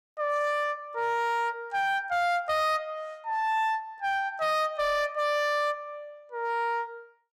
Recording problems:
distorted audio; hard clipping, uneven, signal-to-distortion ratio 11 dB

